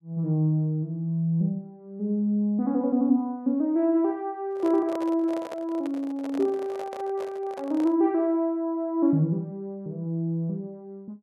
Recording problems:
handling noise; from 4.5 to 8 s; peak -6 dB vs average level

